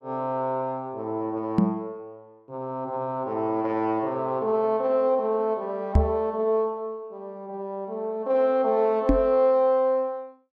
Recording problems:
knock on the microphone; at 1.5 s, at 6 s and at 9 s; peak +9 dB vs average level

